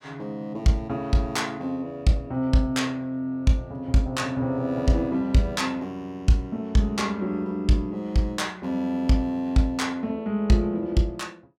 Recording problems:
none

